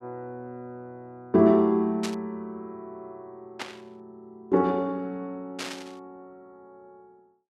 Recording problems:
burst of static; at 2 s, at 3.5 s and at 5.5 s; peak -4 dB vs average level

